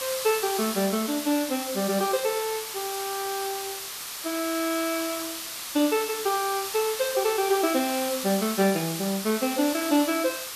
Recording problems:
background hiss; SNR 5 dB

